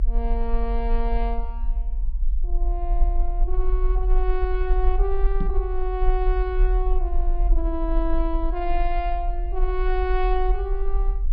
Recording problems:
low-pass filter; nothing above 5.5 kHz
rumble; below 42 Hz, SNR -3 dB
microphone thump; at 5.5 s; peak +3 dB vs average level

